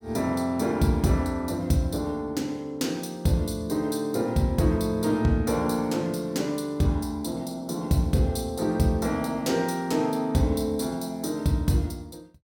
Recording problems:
none

